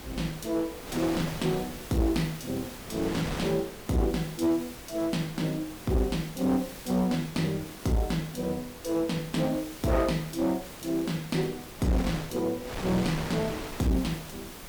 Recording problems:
distorted audio; hard clipping, uneven, signal-to-distortion ratio 10 dB
background hiss; slope 0 dB per octave, SNR 16 dB
wind on the microphone; below 1.9 kHz, SNR 12 dB
crackling; from 6 to 8 s and from 9.5 to 11 s; loose cable, SNR 26 dB

